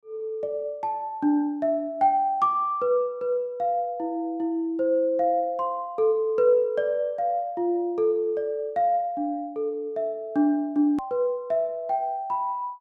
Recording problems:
edit click; at 11 s

